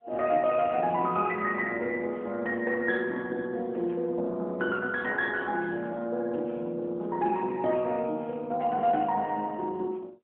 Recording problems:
phone line; 260 Hz to 3.3 kHz, AMR-NB

